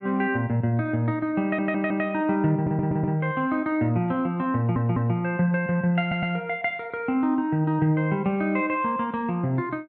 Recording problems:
audio stuttering; 4 times, first at 1.5 s

